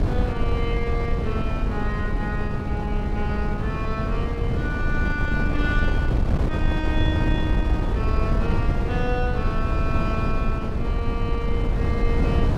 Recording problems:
wind on the microphone; below 150 Hz, SNR -5 dB

